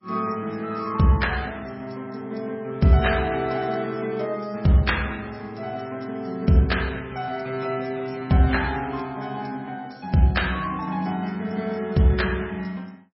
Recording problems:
codec artefacts; MP3, log-spectral distance 5 dB, nothing above 5.5 kHz

